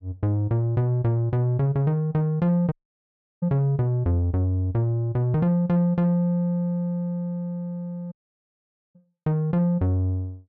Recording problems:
dropout; at 2.5 s for 0.5 s and at 8 s for 1 s

